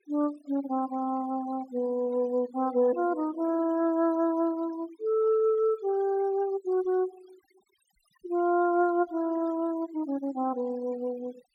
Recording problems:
noise reduction artefacts; signal-to-artefact ratio 23 dB

